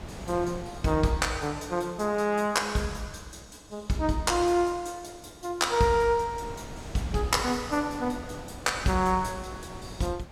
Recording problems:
wind on the microphone; below 730 Hz, SNR 17 dB

